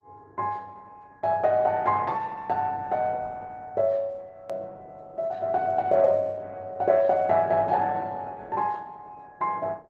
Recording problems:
lossy codec; Opus, log-spectral distance 2 dB
click at an edit; at 4.5 s

